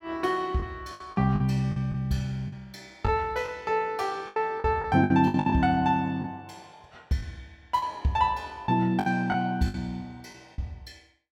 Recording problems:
packet loss; 9% of the sound replaced, filled with the last packet

